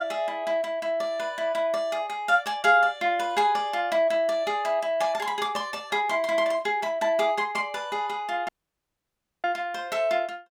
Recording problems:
audio cutting out; at 8.5 s for 1 s

